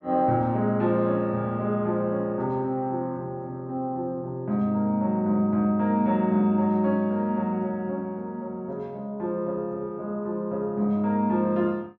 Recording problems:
treble missing; nothing above 8 kHz

